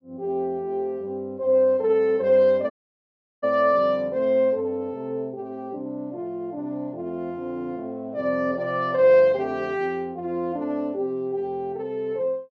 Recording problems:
dropout; at 2.5 s for 0.5 s

